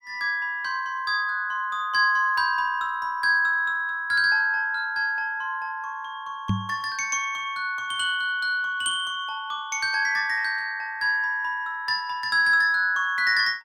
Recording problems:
microphone thump; at 6.5 s; peak +2 dB vs average level

